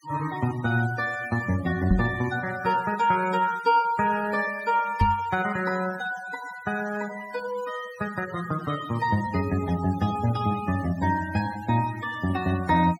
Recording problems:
noise reduction artefacts; signal-to-artefact ratio 16 dB
knock on the microphone; at 2 s and at 5 s; peak +7 dB vs average level

